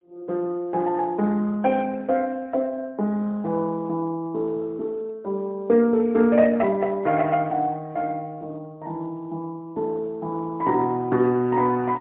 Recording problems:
telephone audio; 150 Hz to 3.2 kHz, AMR-NB, then MP3

